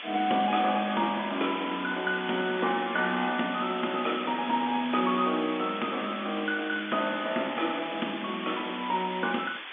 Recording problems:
phone line; 220 Hz to 3.6 kHz, G.711
background hiss; SNR 9 dB

